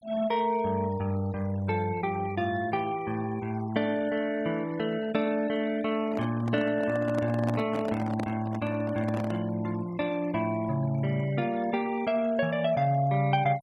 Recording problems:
denoising artefacts; signal-to-artefact ratio 20 dB
handling noise; from 6 to 9.5 s; peak -2 dB vs average level

